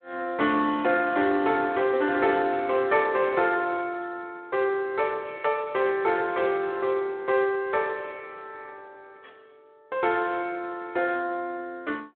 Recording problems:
phone line; 240 Hz to 3.9 kHz, Speex

